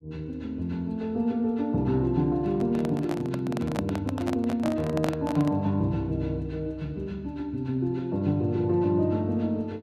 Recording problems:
handling noise; from 2.5 to 5.5 s; peak +1 dB vs average level

